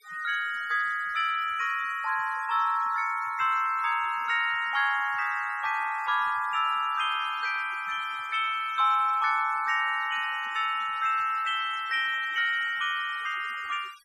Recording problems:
noise reduction artefacts; signal-to-artefact ratio 23 dB

